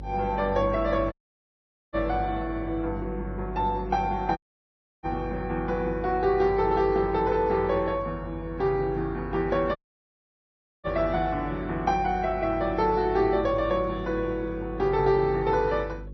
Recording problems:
lossy compression; MP2, then MP3, log-spectral distance 2 dB, nothing above 5.8 kHz
electrical hum; 50 Hz, harmonics up to 550 Hz, SNR 12 dB
dropout; at 1 s for 1 s, at 4.5 s for 0.5 s and at 10 s for 1 s

